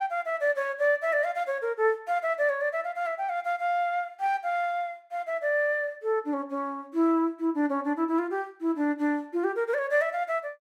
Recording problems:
none

